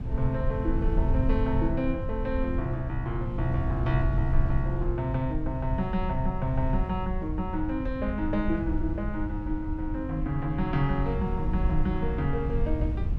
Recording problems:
low-frequency rumble; below 82 Hz, SNR 2 dB

